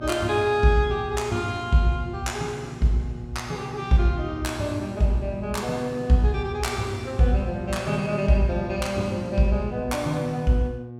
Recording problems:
electrical hum; 60 Hz, harmonics up to 840 Hz, SNR 14 dB

